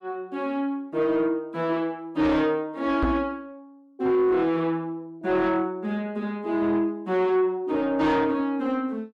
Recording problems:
distorted audio; soft clipping, signal-to-distortion ratio 11 dB
knock on the microphone; at 3 s; peak +2 dB vs average level

